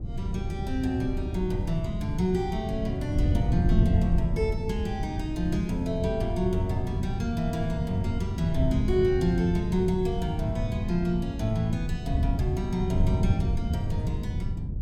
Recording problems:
wind on the microphone; below 130 Hz, SNR 1 dB

